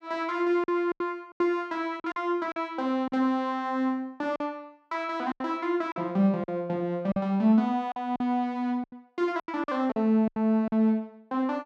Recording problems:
lost packets; 9% of the sound replaced, filled with silence

